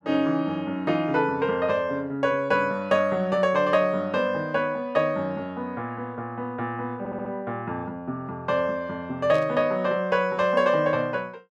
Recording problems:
stutter; at 7 s
static burst; at 9.5 s; peak -13 dB vs average level

